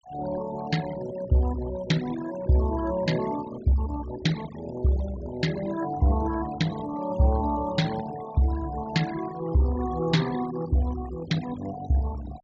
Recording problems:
treble cut off; nothing above 8 kHz
denoising artefacts; signal-to-artefact ratio 15 dB

